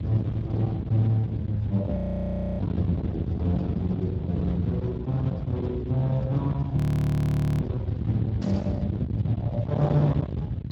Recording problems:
codec artefacts; Speex, log-spectral distance 2 dB, nothing above 17.1 kHz
distortion; hard clipping, uneven, signal-to-distortion ratio 6 dB
low-frequency rumble; below 200 Hz, SNR 5 dB
frozen audio; at 2 s for 0.5 s and at 7 s for 1 s
static burst; at 8.5 s; peak -17 dB vs average level

